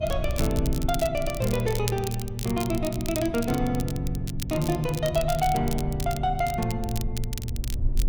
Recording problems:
hum; 60 Hz, harmonics up to 600 Hz, SNR 14 dB
rumble; below 68 Hz, SNR 8 dB
crackle; vinyl, SNR 11 dB

